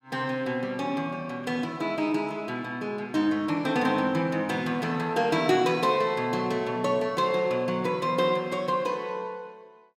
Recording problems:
none

